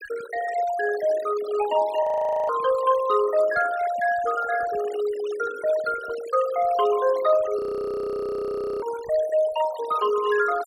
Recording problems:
denoising artefacts; signal-to-artefact ratio 15 dB
audio freezing; at 2 s and at 7.5 s for 1 s

